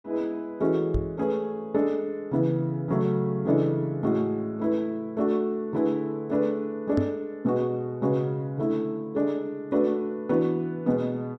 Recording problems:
knock on the microphone; at 1 s and at 7 s; peak +3 dB vs average level

